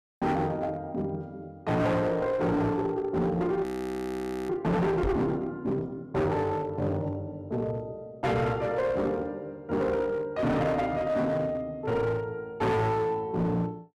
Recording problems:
distortion; hard clipping, uneven, signal-to-distortion ratio 7 dB
audio freezing; at 3.5 s for 1 s
knock on the microphone; at 5 s; peak +3 dB vs average level

